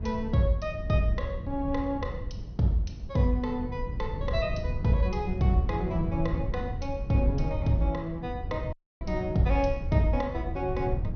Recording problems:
treble cut off; nothing above 6.2 kHz
rumble; below 120 Hz, SNR 6 dB
dropout; at 8.5 s

